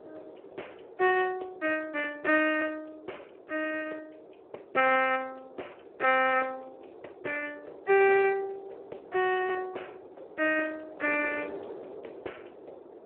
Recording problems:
telephone audio; 320 Hz to 3.2 kHz, Speex
wind noise; below 590 Hz, SNR 19 dB

